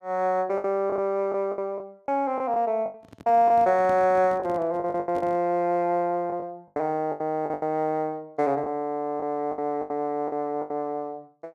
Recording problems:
lost packets; 11% of the sound replaced, filled with the last packet
microphone handling noise; from 3 to 5.5 s; peak -10 dB vs average level

